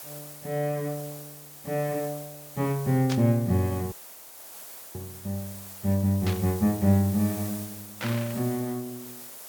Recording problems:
background hiss; SNR 13 dB
static burst; at 3 s, at 6.5 s and at 8 s; peak -3 dB vs average level
frozen audio; at 4 s for 1 s

